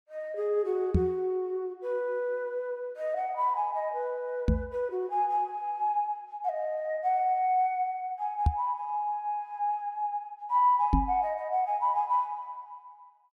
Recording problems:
microphone bump; 4 times, first at 1 s; peak +8 dB vs average level

